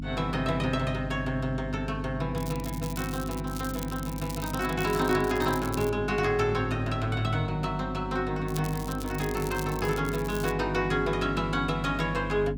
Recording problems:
hum; 50 Hz, harmonics up to 300 Hz, SNR 7 dB
crackle; from 2.5 to 3.5 s, from 3.5 to 6 s and from 8.5 to 11 s; loose cable, SNR 13 dB

